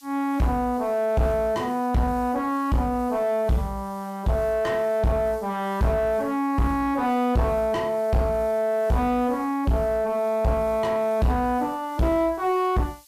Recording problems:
distorted audio; soft clipping, signal-to-distortion ratio 6 dB
background hiss; SNR 27 dB

